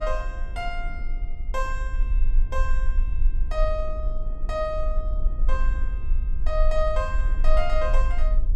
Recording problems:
low-frequency rumble; below 38 Hz, strongest tone 20 Hz, SNR -3 dB
wind noise; below 230 Hz, SNR 14 dB

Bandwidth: 14.5 kHz